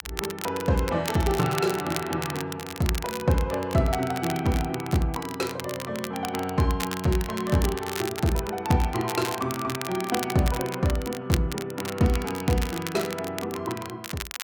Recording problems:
crackle; vinyl, SNR 9 dB

